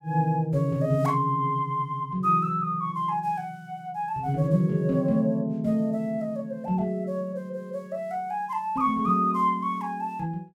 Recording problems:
none

